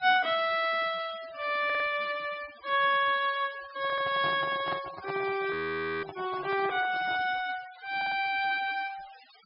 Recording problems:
treble cut off; nothing above 5.5 kHz
noise reduction artefacts; signal-to-artefact ratio 19 dB
audio stuttering; at 1.5 s, at 4 s and at 8 s
handling noise; from 3.5 to 7.5 s; peak -5 dB vs average level
audio freezing; at 5.5 s for 0.5 s

